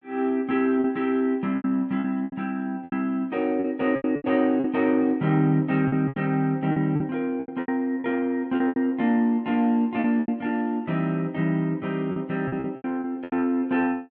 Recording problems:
lost packets; 11% of the sound replaced, filled with repeated pitch periods

